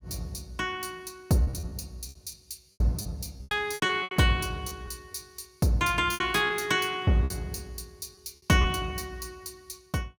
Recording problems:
packet loss; 10% of the sound replaced, filled with repeated pitch periods

